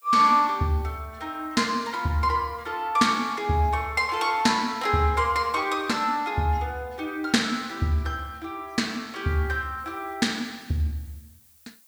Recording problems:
hiss; SNR 30 dB

